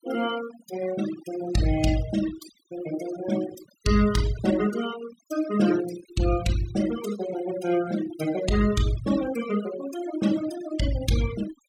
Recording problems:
denoising artefacts; signal-to-artefact ratio 11 dB

